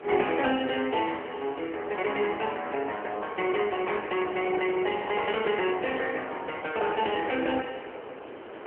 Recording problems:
telephone audio; 300 Hz to 3.2 kHz, AMR-NB
wind on the microphone; below 1.1 kHz, SNR 12 dB

